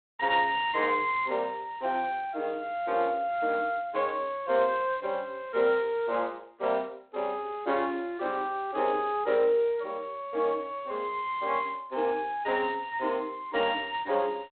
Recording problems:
phone line; 280 Hz to 3.7 kHz, G.726

